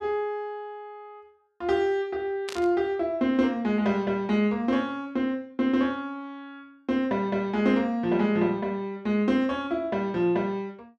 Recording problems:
static burst; at 2.5 s; peak -5 dB vs average level

